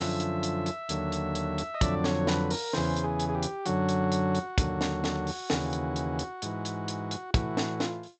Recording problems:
codec artefacts; G.722, log-spectral distance 3 dB, nothing above 7.8 kHz

